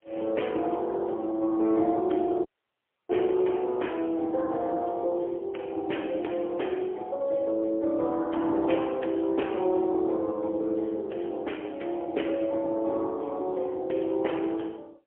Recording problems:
phone line; 280 Hz to 3.3 kHz, AMR-NB, then MP3
dropout; at 2.5 s for 0.5 s

